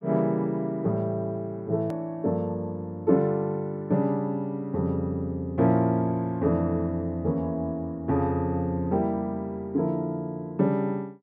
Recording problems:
hard cut with a click; at 2 s

